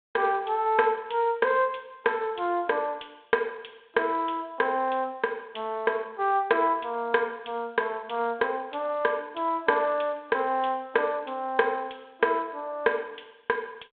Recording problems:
phone line; 280 Hz to 3.6 kHz, G.726

